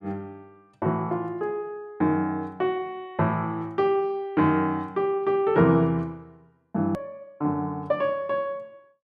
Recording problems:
edit click; at 7 s

